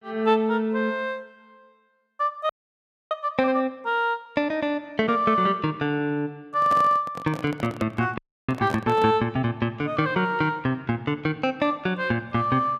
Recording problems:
frozen audio; at 2.5 s for 0.5 s and at 8 s
microphone handling noise; from 6.5 to 9 s; peak -4 dB vs average level

